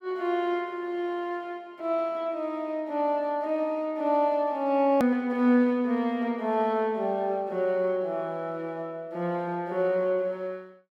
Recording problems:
click at an edit; at 5 s

